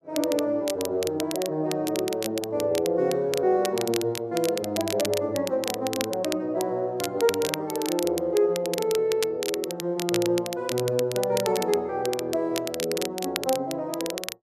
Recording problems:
crackling; vinyl, SNR 8 dB

